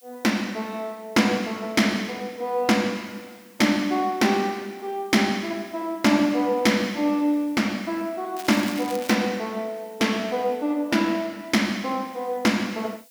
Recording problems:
hiss; slope +5 dB per octave, SNR 28 dB
crackling; at 8.5 s; loose cable, SNR 15 dB

